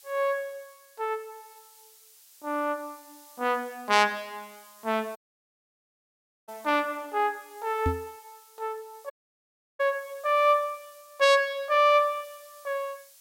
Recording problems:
hiss; slope +5 dB per octave, SNR 25 dB
dropout; at 5 s for 1.5 s and at 9 s for 0.5 s
microphone thump; at 8 s; peak +2 dB vs average level

